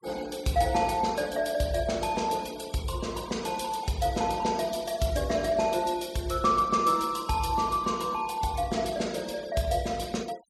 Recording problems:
denoising artefacts; signal-to-artefact ratio 20 dB

